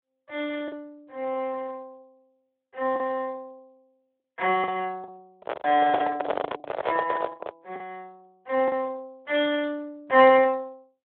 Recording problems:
telephone audio; 320 Hz to 3.8 kHz, Speex
lost packets; 5% of the sound replaced, filled with the last packet
handling noise; from 5.5 to 7.5 s; peak +3 dB vs average level

